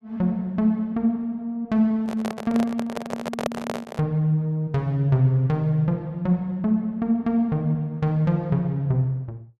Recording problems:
microphone handling noise; from 2 to 4 s; peak +1 dB vs average level

